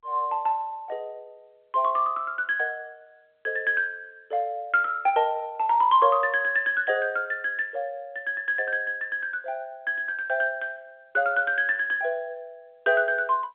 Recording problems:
phone line; 280 Hz to 3.7 kHz, G.711

